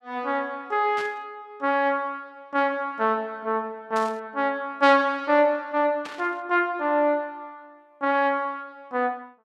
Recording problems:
burst of static; at 1 s, at 4 s and at 6 s; peak -10 dB vs average level

